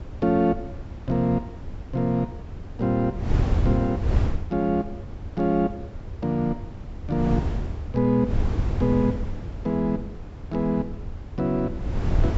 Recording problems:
treble cut off; nothing above 7.7 kHz
wind noise; below 130 Hz, SNR 5 dB

